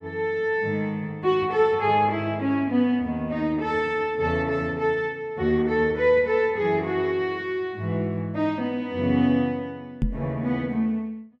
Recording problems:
microphone thump; at 10 s; peak +2 dB vs average level

